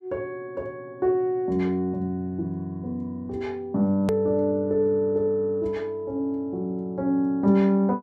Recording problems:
hard cut with a click; at 4 s

